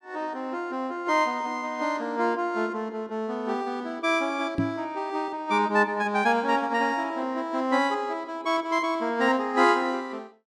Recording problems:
knock on the microphone; at 4.5 s; peak +4 dB vs average level

